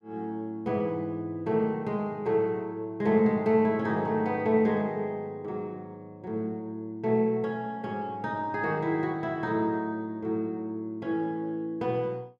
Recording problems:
none

